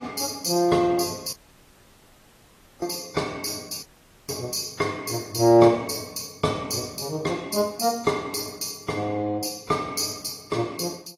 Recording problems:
lossy compression; AAC, log-spectral distance 6 dB, nothing above 13.8 kHz
dropout; at 1.5 s for 1.5 s and at 4 s

